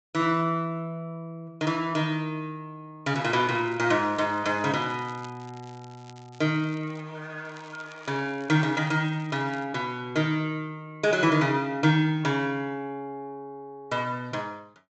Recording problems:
treble cut off; nothing above 8 kHz
crackling; from 3.5 to 7 s and from 7.5 to 9.5 s; loose cable, SNR 27 dB

